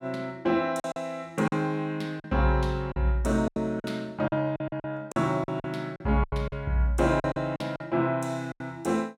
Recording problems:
packet loss; 11% of the sound replaced, filled with silence

